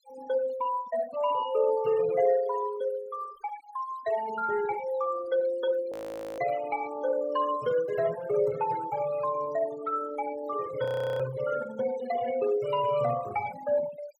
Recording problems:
denoising artefacts; signal-to-artefact ratio 15 dB
frozen audio; at 6 s and at 11 s

